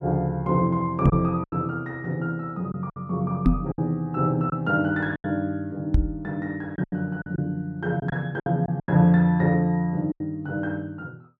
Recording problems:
lost packets; 7% of the sound replaced, filled with silence
microphone thump; at 1 s, at 3.5 s and at 6 s; peak +9 dB vs average level

